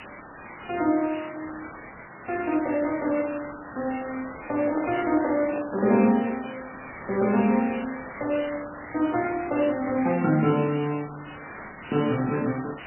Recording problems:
codec artefacts; MP3, log-spectral distance 24 dB, nothing above 2.4 kHz
background hiss; SNR 13 dB
handling noise; from 4.5 to 6.5 s; peak -7 dB vs average level

